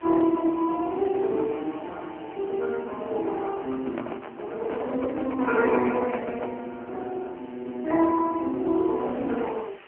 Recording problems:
telephone audio; 260 Hz to 3.3 kHz, AMR-NB
hiss; SNR 24 dB
handling noise; from 3.5 to 6.5 s; peak -4 dB vs average level

